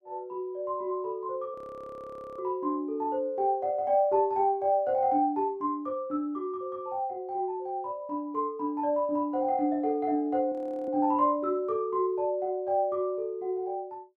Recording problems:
audio freezing; at 1.5 s for 1 s and at 11 s

